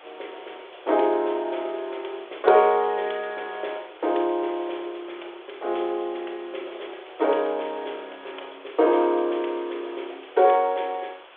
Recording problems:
phone line; 320 Hz to 3.5 kHz, G.726
background hiss; SNR 22 dB

